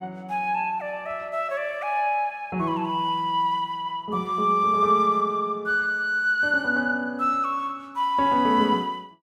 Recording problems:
none

